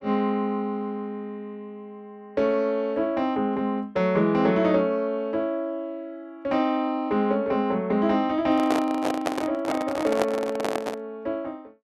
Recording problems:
handling noise; from 8.5 to 11 s; peak +3 dB vs average level

